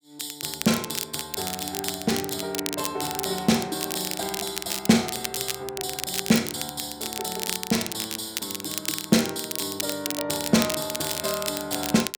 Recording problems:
crackling; vinyl, SNR 4 dB

